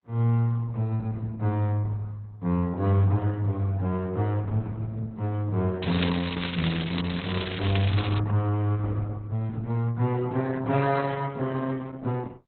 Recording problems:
lossy compression; Opus, log-spectral distance 5 dB, nothing above 4.1 kHz
crackle; from 6 to 8 s; loose cable, SNR 7 dB

